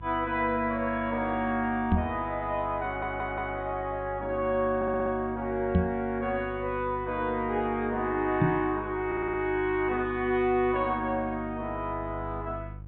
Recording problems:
treble cut off; nothing above 4 kHz
hum; 50 Hz, harmonics up to 350 Hz, SNR 14 dB
microphone bump; at 2 s, at 6 s and at 8.5 s; peak +8 dB vs average level
audio stuttering; at 3 s, at 5 s and at 9 s

